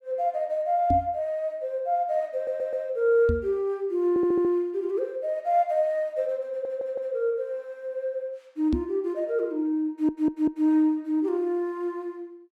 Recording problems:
microphone bump; at 1 s, at 3.5 s and at 8.5 s; peak +3 dB vs average level
stutter; 4 times, first at 2.5 s

